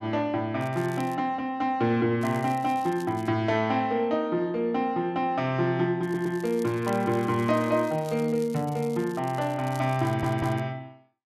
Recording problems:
crackle; at 0.5 s, from 2 to 3.5 s and from 6 to 11 s; loose cable, SNR 23 dB
audio stuttering; at 6 s and at 10 s

